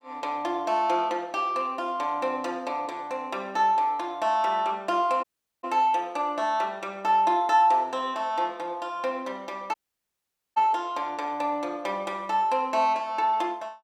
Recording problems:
dropout; at 5 s and at 9.5 s for 1 s

